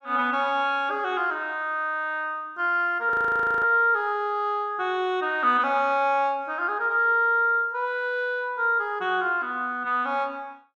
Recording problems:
audio freezing; at 3 s for 0.5 s

